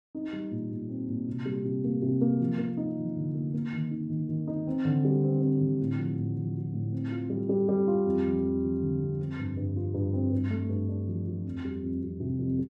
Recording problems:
none

